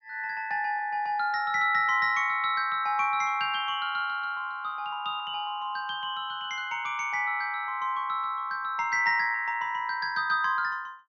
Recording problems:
low-pass filter; nothing above 6.5 kHz

